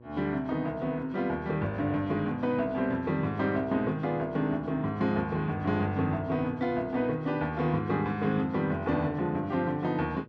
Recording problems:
electrical hum; 60 Hz, harmonics up to 1.1 kHz, SNR 23 dB

